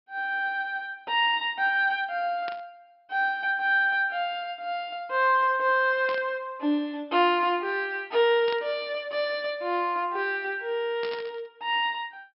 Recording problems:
low-pass filter; nothing above 5.4 kHz
burst of static; 4 times, first at 2.5 s; peak -8 dB vs average level

